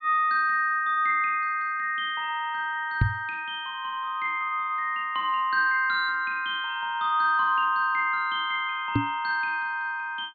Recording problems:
low-pass filter; nothing above 4.7 kHz
microphone bump; at 3 s and at 9 s; peak +7 dB vs average level

